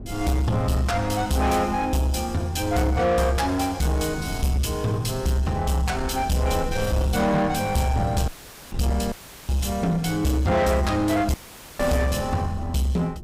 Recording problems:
distortion; soft clipping, signal-to-distortion ratio 10 dB
low-frequency rumble; below 170 Hz, SNR 13 dB
dropout; at 8.5 s, at 9 s and at 11 s; filled with static

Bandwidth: 15.5 kHz